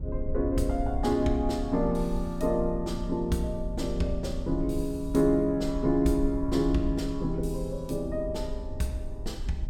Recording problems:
low-frequency rumble; below 64 Hz, SNR 8 dB

